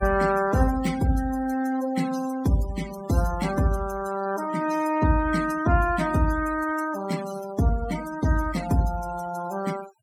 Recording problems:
noise reduction artefacts; signal-to-artefact ratio 14 dB

